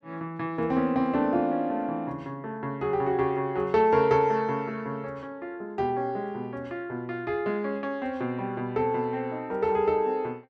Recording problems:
none

